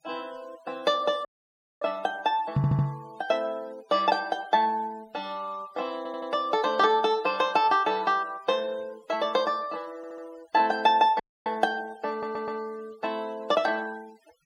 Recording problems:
noise reduction artefacts; signal-to-artefact ratio 26 dB
audio cutting out; at 1.5 s for 0.5 s and at 11 s
microphone thump; at 2.5 s; peak +5 dB vs average level
audio stuttering; 4 times, first at 2.5 s

